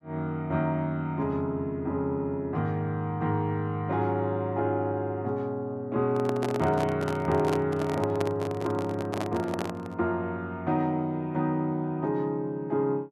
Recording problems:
microphone handling noise; from 6 to 10 s; peak +2 dB vs average level

